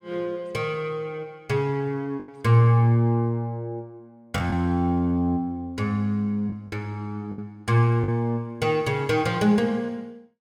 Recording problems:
lost packets; 3% of the sound replaced, filled with the last packet

